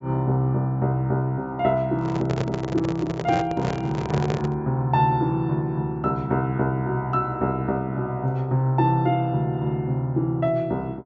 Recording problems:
treble missing; nothing above 8 kHz
handling noise; from 2 to 4.5 s; peak 0 dB vs average level

